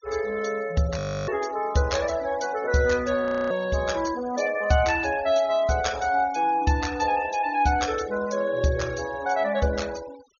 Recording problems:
treble cut off; nothing above 6.8 kHz
denoising artefacts; signal-to-artefact ratio 18 dB
frozen audio; at 1 s and at 3.5 s

